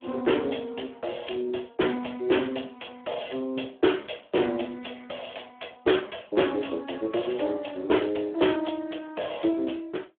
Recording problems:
phone line; 280 Hz to 3.3 kHz, Speex

